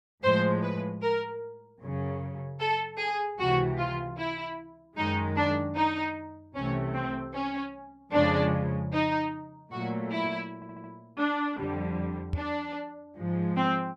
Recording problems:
audio stuttering; at 11 s
microphone bump; at 12 s; peak +2 dB vs average level

